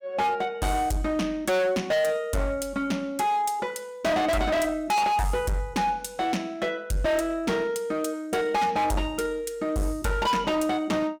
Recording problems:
distorted audio; hard clipping, signal-to-distortion ratio 6 dB

